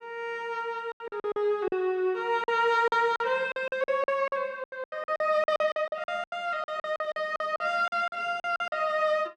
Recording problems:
packet loss; 16% of the sound replaced, filled with silence

